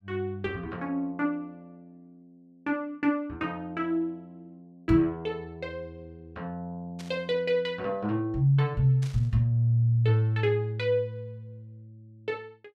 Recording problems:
burst of static; at 7 s and at 9 s; peak -13 dB vs average level

